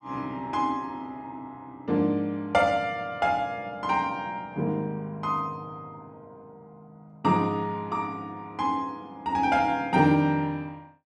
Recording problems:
none

